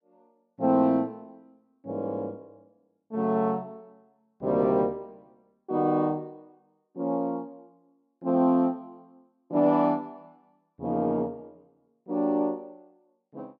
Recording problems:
none

